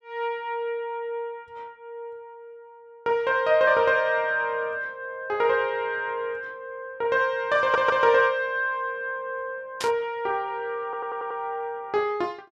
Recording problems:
audio stuttering; at 7.5 s and at 11 s
burst of static; at 10 s; peak -2 dB vs average level

